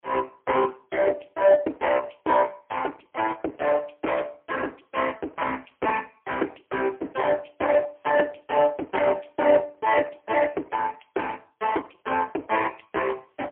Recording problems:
telephone audio; 280 Hz to 2.6 kHz, AMR-NB, then MP3

